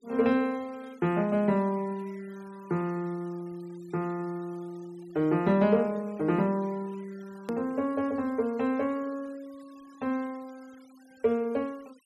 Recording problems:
noise reduction artefacts; signal-to-artefact ratio 27 dB
click at an edit; at 7.5 s

